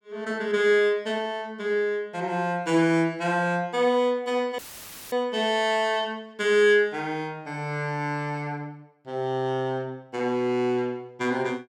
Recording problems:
audio cutting out; at 4.5 s for 0.5 s; filled with static

